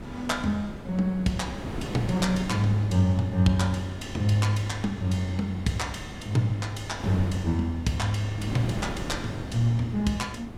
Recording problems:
wind noise; below 400 Hz, SNR 10 dB

